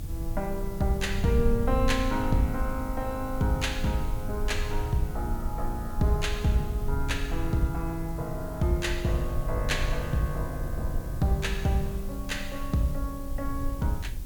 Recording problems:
background hiss; slope +2 dB per octave, SNR 19 dB
rumble; below 70 Hz, SNR 5 dB

